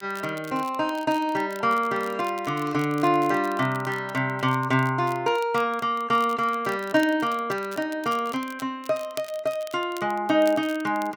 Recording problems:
crackle; vinyl, SNR 21 dB

